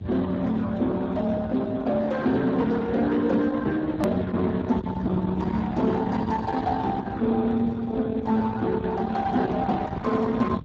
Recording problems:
lossy codec; Speex, log-spectral distance 3 dB, nothing above 13.3 kHz
distortion; soft clipping, signal-to-distortion ratio 11 dB
rumble; below 550 Hz, SNR 11 dB
click at an edit; at 4 s

